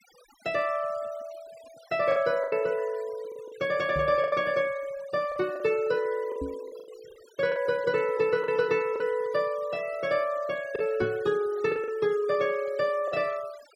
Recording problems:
noise reduction artefacts; signal-to-artefact ratio 22 dB
lost packets; 7% of the sound replaced, filled with the last packet
microphone thump; at 4 s, at 6.5 s and at 11 s; peak -4 dB vs average level

